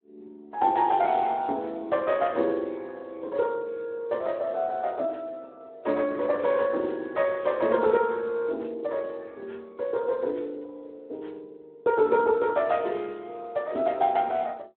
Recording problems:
telephone audio; 240 Hz to 4 kHz, Speex

